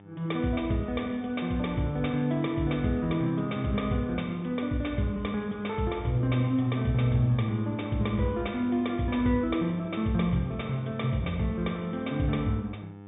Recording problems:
treble missing; nothing above 3.7 kHz
hum; 50 Hz, harmonics up to 1.8 kHz, SNR 18 dB

